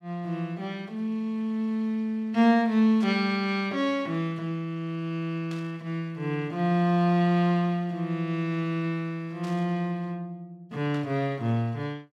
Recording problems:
static burst; 4 times, first at 3 s; peak -13 dB vs average level

